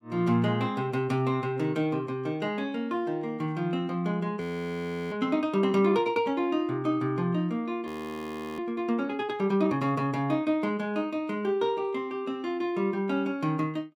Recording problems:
audio freezing; at 4.5 s for 0.5 s and at 8 s for 0.5 s

